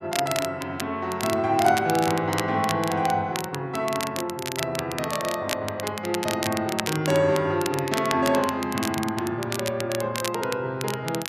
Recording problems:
crackling; vinyl, SNR 8 dB

